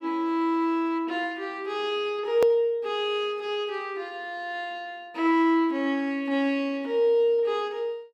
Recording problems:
hard cut with a click; at 2.5 s

